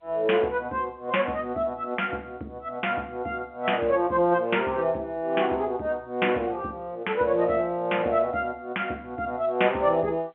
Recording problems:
telephone audio; 280 Hz to 3.3 kHz, G.711

